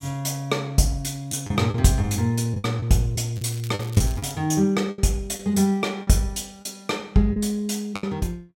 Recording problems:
lost packets; 7% of the sound replaced, filled with the last packet
crackle; at 3.5 s; loose cable, SNR 20 dB

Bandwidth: 16 kHz